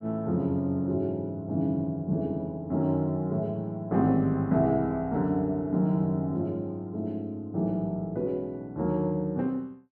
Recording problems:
none

